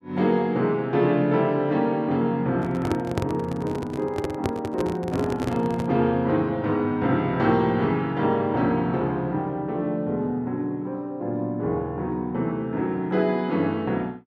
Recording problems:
microphone handling noise; from 2.5 to 6 s; peak +2 dB vs average level

